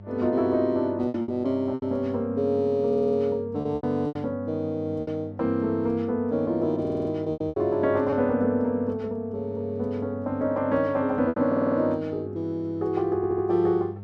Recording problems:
hum; 50 Hz, harmonics up to 700 Hz, SNR 15 dB
packet loss; 6% of the sound replaced, filled with repeated pitch periods
stutter; 4 times, first at 3 s

